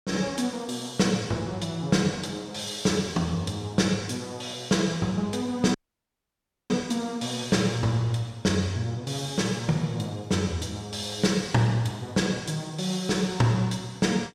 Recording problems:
audio cutting out; at 5.5 s for 1 s

